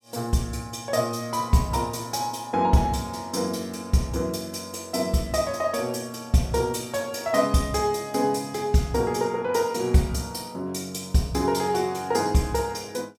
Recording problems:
none

